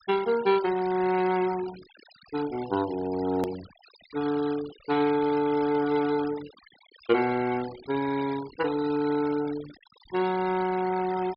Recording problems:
treble missing; nothing above 5.5 kHz
noise reduction artefacts; signal-to-artefact ratio 16 dB
click at an edit; at 3.5 s

